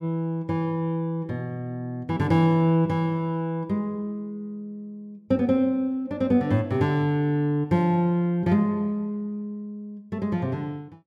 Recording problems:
none

